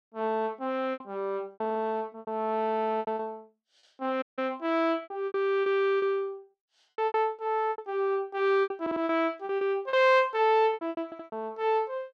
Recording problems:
lost packets; 13% of the sound replaced, filled with repeated pitch periods
stutter; at 1.5 s, at 9 s and at 11 s
audio cutting out; at 4 s

